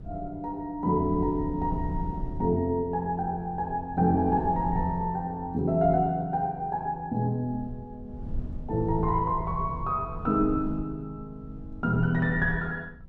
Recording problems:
wind on the microphone; below 120 Hz, SNR 12 dB

